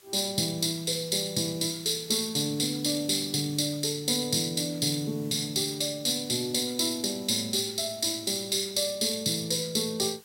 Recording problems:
hiss; slope +1 dB per octave, SNR 23 dB

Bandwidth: 16 kHz